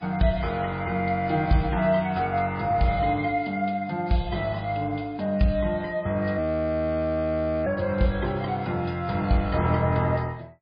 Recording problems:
codec artefacts; MP3, log-spectral distance 3 dB, nothing above 4.6 kHz
frozen audio; at 6.5 s for 1.5 s

